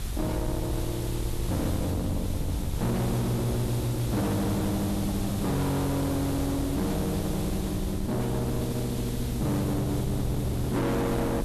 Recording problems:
distorted audio; soft clipping, signal-to-distortion ratio 7 dB
hiss; slope -1 dB per octave, SNR 13 dB
low-frequency rumble; below 180 Hz, SNR 6 dB
wind noise; below 280 Hz, SNR 11 dB

